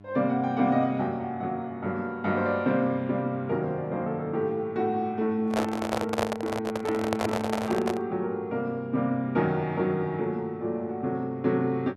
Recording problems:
electrical hum; 50 Hz, harmonics up to 1.1 kHz, SNR 21 dB
handling noise; from 5.5 to 8 s; peak +4 dB vs average level

